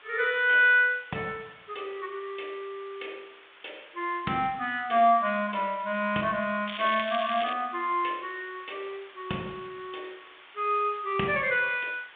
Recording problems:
telephone audio; 300 Hz to 3.6 kHz, G.726
hiss; SNR 23 dB
crackling; at 6.5 s; loose cable, SNR 10 dB

